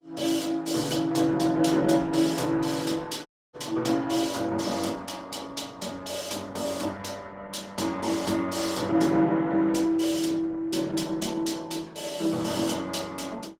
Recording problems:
lossy codec; Opus, log-spectral distance 5 dB, nothing above 18.9 kHz
audio cutting out; at 3.5 s

